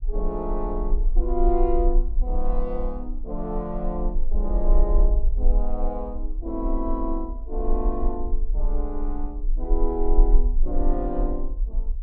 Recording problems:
low-frequency rumble; below 36 Hz, strongest tone 26 Hz, SNR -3 dB

